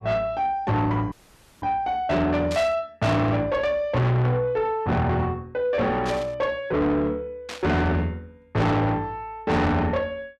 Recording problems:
distorted audio; soft clipping, signal-to-distortion ratio 6 dB
audio cutting out; at 1 s for 0.5 s
static burst; at 2.5 s, at 6 s and at 7.5 s; peak -6 dB vs average level

